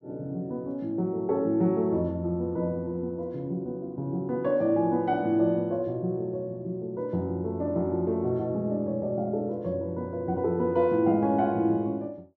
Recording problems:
none

